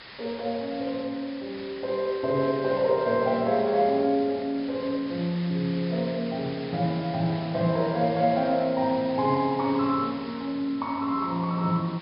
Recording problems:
low-pass filter; nothing above 5.5 kHz
background hiss; SNR 17 dB

